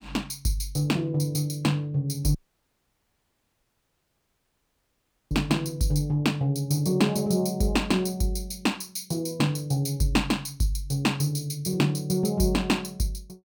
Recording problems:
audio cutting out; at 2.5 s for 3 s

